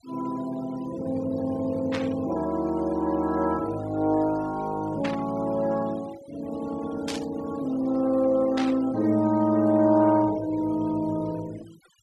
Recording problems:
noise reduction artefacts; signal-to-artefact ratio 21 dB
burst of static; 4 times, first at 2 s; peak -3 dB vs average level

